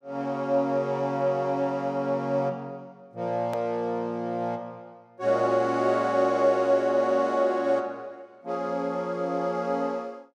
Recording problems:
click at an edit; at 3.5 s

